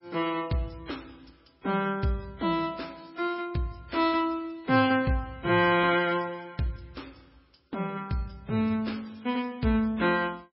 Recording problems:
codec artefacts; MP3, log-spectral distance 5 dB, nothing above 4.9 kHz

